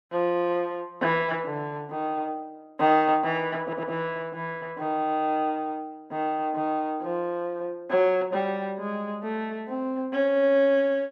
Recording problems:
stutter; at 3.5 s

